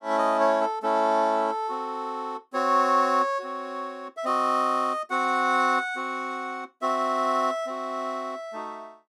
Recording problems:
none

